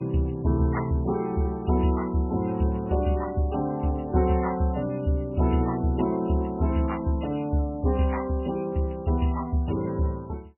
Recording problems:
lossy codec; MP3, log-spectral distance 4 dB, nothing above 2.8 kHz

